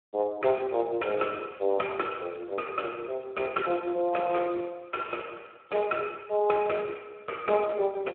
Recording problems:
phone line; 300 Hz to 3.4 kHz, Speex

